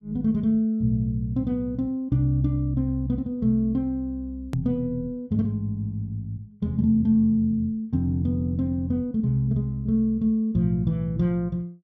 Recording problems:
hard cut with a click; at 4.5 s

